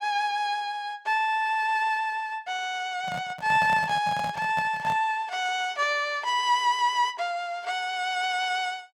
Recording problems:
microphone handling noise; from 3 to 5 s; peak -6 dB vs average level

